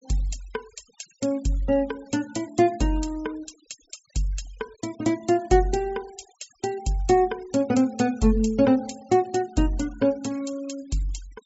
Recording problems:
treble cut off; nothing above 8 kHz
noise reduction artefacts; signal-to-artefact ratio 24 dB

